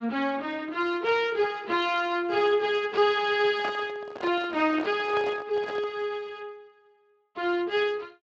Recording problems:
lossy codec; Speex, log-spectral distance 3 dB
handling noise; from 3.5 to 6 s; peak -4 dB vs average level

